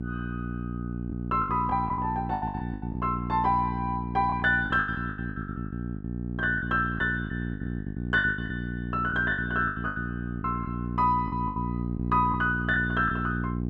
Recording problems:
hum; 60 Hz, harmonics up to 480 Hz, SNR 5 dB
lost packets; 14% of the sound replaced, filled with the last packet

